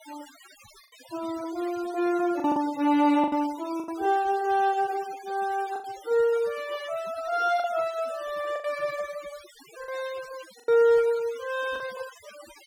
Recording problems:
denoising artefacts; signal-to-artefact ratio 19 dB
lost packets; 6% of the sound replaced, filled with the last packet

